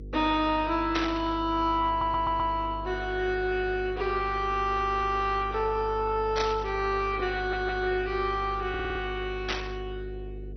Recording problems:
codec artefacts; MP2, log-spectral distance 3 dB, nothing above 5 kHz
mains hum; 50 Hz, harmonics up to 500 Hz, SNR 12 dB
static burst; at 1 s, at 6.5 s and at 9.5 s; peak +2 dB vs average level
audio stuttering; 4 times, first at 2 s

